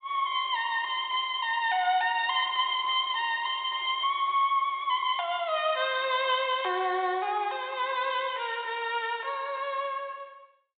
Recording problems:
low-pass filter; nothing above 4 kHz

